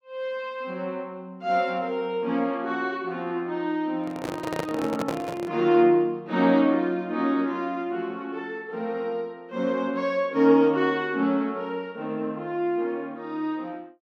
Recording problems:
handling noise; from 4 to 5.5 s; peak +1 dB vs average level

